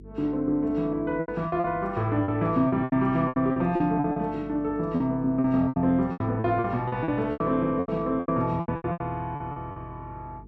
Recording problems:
electrical hum; 50 Hz, harmonics up to 450 Hz, SNR 21 dB
lost packets; 15% of the sound replaced, filled with repeated pitch periods

